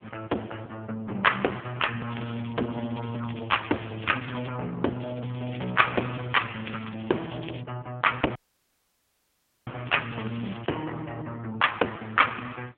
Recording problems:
phone line; 240 Hz to 3.4 kHz, AMR-NB
crackle; from 2 to 4.5 s, from 5 to 7.5 s and at 10 s; loose cable, SNR 17 dB
audio cutting out; at 8.5 s for 1.5 s

